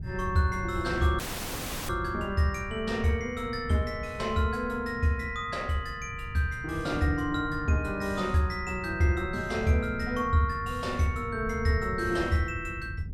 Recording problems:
wind noise; below 130 Hz, SNR 11 dB
dropout; at 1 s for 0.5 s

